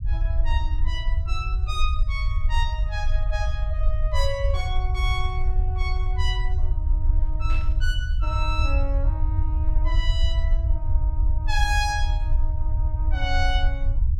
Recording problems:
rumble; below 64 Hz, SNR -6 dB
burst of static; at 7.5 s; peak -10 dB vs average level

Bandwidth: 16 kHz